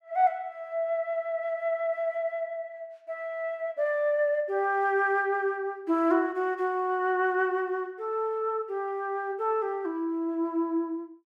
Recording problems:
none

